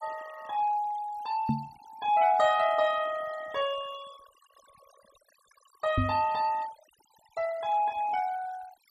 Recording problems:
denoising artefacts; signal-to-artefact ratio 19 dB
knock on the microphone; at 1.5 s and at 6 s; peak +4 dB vs average level

